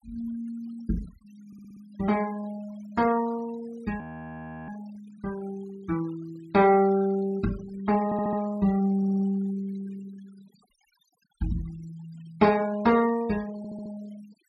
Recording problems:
noise reduction artefacts; signal-to-artefact ratio 22 dB
stutter; 4 times, first at 1.5 s
frozen audio; at 4 s for 0.5 s

